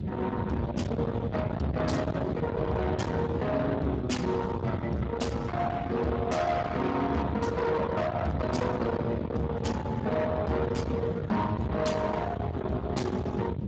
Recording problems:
lossy codec; Speex, log-spectral distance 3 dB, nothing above 7.6 kHz
distorted audio; soft clipping, signal-to-distortion ratio 6 dB
low-frequency rumble; below 610 Hz, SNR 4 dB

